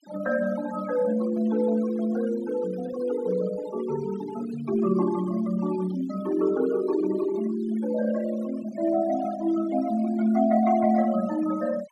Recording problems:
noise reduction artefacts; signal-to-artefact ratio 17 dB

